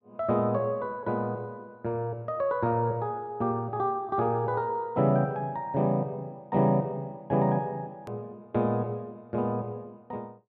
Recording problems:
edit click; at 8 s

